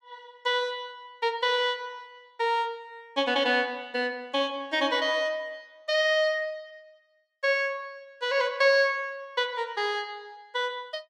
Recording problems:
none

